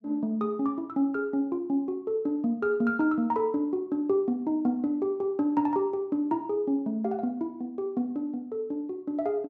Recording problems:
none

